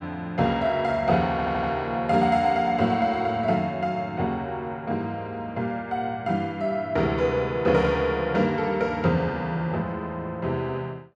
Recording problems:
stutter; at 1.5 s

